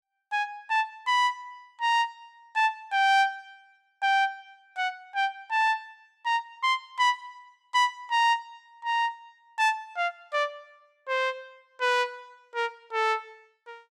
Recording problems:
none

